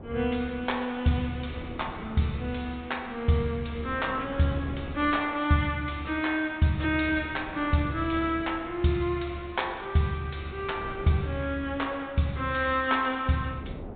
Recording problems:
treble cut off; nothing above 4 kHz
wind noise; below 410 Hz, SNR 17 dB

